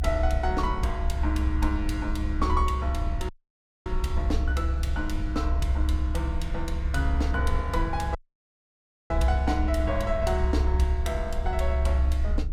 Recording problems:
rumble; below 68 Hz, strongest tone 66 Hz, SNR -2 dB
audio cutting out; at 3.5 s for 0.5 s and at 8 s for 1 s

